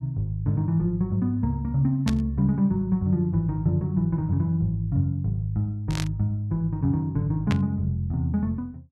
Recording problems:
static burst; at 2 s, at 6 s and at 7.5 s; peak -3 dB vs average level

